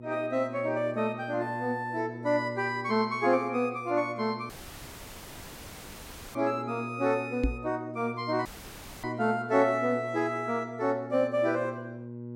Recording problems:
hum; 60 Hz, harmonics up to 600 Hz, SNR 12 dB
dropout; at 4.5 s for 2 s and at 8.5 s for 0.5 s
knock on the microphone; at 7.5 s; peak +5 dB vs average level

